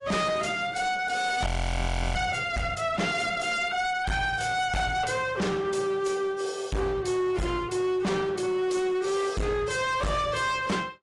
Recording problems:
codec artefacts; AAC, log-spectral distance 3 dB, nothing above 10.4 kHz
distortion; hard clipping, signal-to-distortion ratio 6 dB
audio freezing; at 1.5 s for 0.5 s

